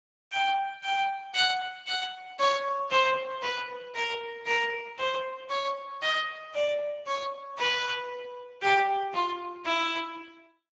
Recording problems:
lossy codec; Speex, log-spectral distance 4 dB, nothing above 7.3 kHz

